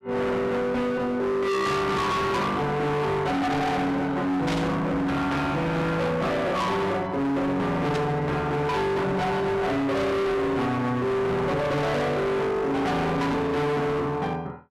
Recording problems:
distorted audio; hard clipping, signal-to-distortion ratio 6 dB
static burst; at 4.5 s and at 8 s; peak -3 dB vs average level

